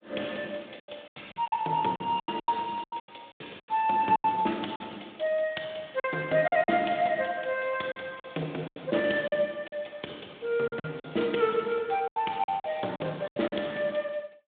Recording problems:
telephone audio; 240 Hz to 3.6 kHz, Speex
packet loss; 12% of the sound replaced, filled with silence

